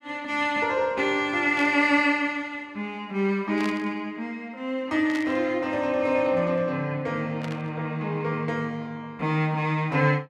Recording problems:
static burst; 4 times, first at 1.5 s; peak -8 dB vs average level

